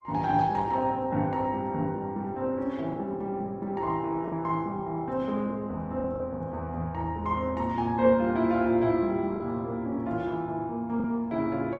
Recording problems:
codec artefacts; Opus, log-spectral distance 2 dB
lost packets; 2% of the sound replaced, filled with the last packet

